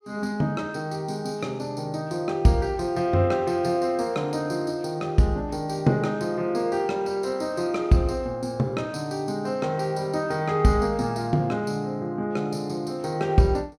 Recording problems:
none

